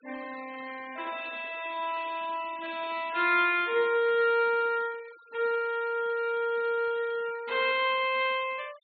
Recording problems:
low-pass filter; nothing above 4.3 kHz
denoising artefacts; signal-to-artefact ratio 22 dB

